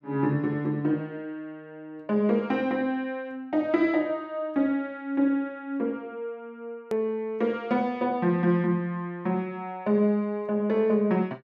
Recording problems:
click at an edit; at 7 s

